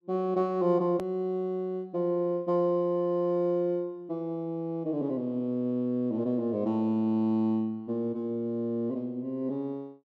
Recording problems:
edit click; at 1 s

